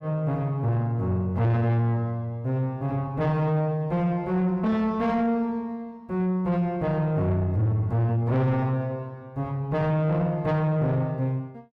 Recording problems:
distorted audio; soft clipping, signal-to-distortion ratio 10 dB

